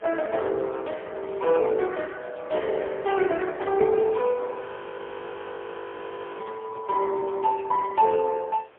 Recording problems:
telephone audio; 320 Hz to 2.2 kHz, AMR-NB, then MP3
wind noise; below 1.9 kHz, SNR 23 dB
frozen audio; at 4.5 s for 2 s

